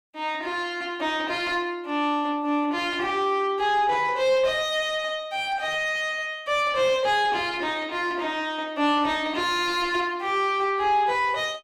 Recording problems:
distorted audio; soft clipping, signal-to-distortion ratio 9 dB

